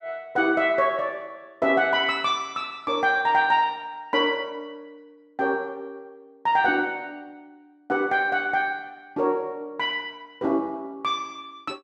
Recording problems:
none

